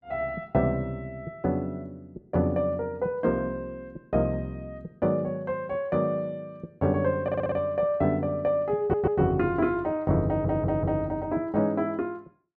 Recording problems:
audio stuttering; at 7 s, at 9 s and at 10 s

